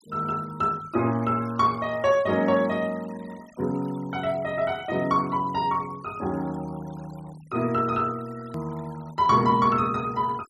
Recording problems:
noise reduction artefacts; signal-to-artefact ratio 23 dB
edit click; at 8.5 s

